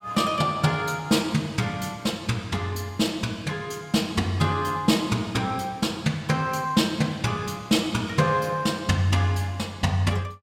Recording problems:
none

